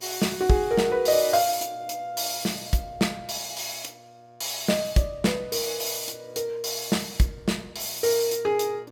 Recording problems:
hum; 60 Hz, harmonics up to 2.3 kHz, SNR 28 dB

